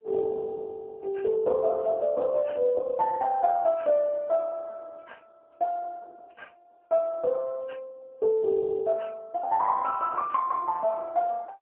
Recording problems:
telephone audio; 280 Hz to 2.3 kHz, AMR-NB, then MP3

